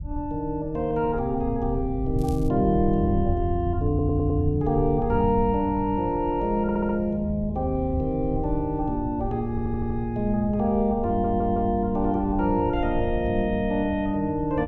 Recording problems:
rumble; below 98 Hz, SNR 9 dB
crackle; at 2 s; loose cable, SNR 25 dB
stutter; 4 times, first at 4 s

